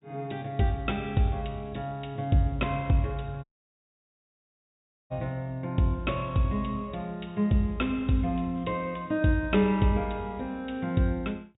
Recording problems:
low-pass filter; nothing above 4 kHz
audio cutting out; at 3.5 s for 1.5 s

